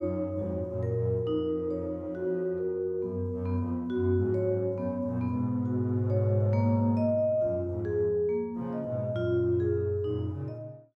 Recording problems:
none

